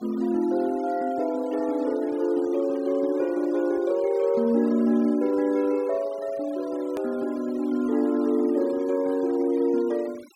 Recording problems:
denoising artefacts; signal-to-artefact ratio 23 dB
edit click; at 7 s

